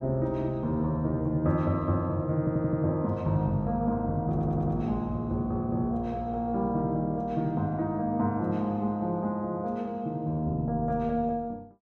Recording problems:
audio stuttering; at 2.5 s and at 4.5 s

